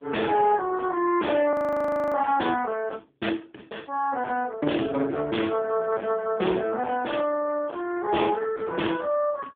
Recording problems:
telephone audio; 240 Hz to 2.8 kHz, AMR-NB
distorted audio; hard clipping, signal-to-distortion ratio 12 dB
audio freezing; at 1.5 s for 0.5 s

